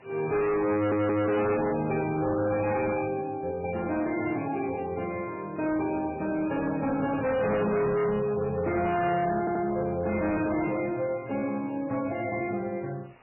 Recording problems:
codec artefacts; MP3, log-spectral distance 8 dB, nothing above 2.4 kHz
distorted audio; hard clipping, signal-to-distortion ratio 7 dB
hiss; SNR 28 dB
stutter; at 0.5 s and at 9.5 s

